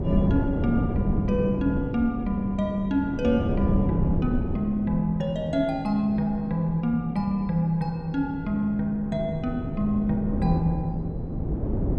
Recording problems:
wind on the microphone; below 260 Hz, SNR 4 dB

